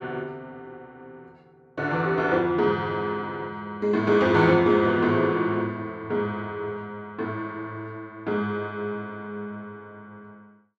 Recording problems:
none

